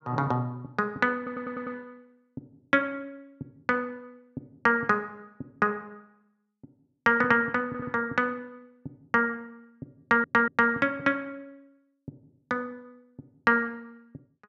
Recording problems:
audio stuttering; at 1 s, at 7.5 s and at 10 s

